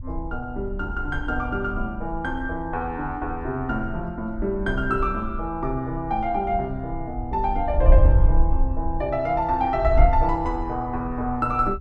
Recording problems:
wind noise; below 62 Hz, SNR 2 dB

